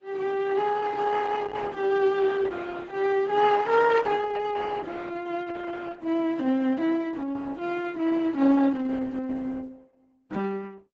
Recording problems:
codec artefacts; AAC, then Opus, log-spectral distance 3 dB, nothing above 7.3 kHz

